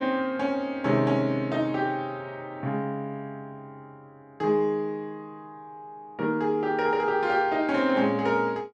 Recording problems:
none

